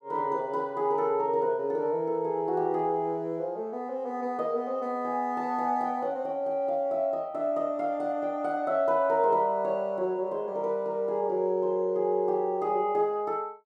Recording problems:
none

